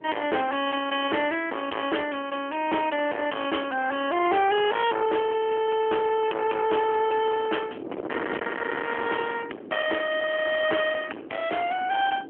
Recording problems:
phone line; 260 Hz to 3.2 kHz, AMR-NB
distorted audio; hard clipping, signal-to-distortion ratio 7 dB
wind on the microphone; below 1.8 kHz, SNR 13 dB

